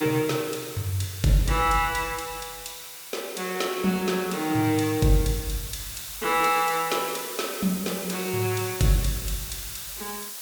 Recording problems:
hiss; SNR 9 dB

